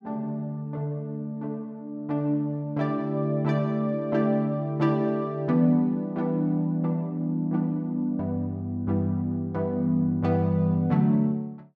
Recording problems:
none

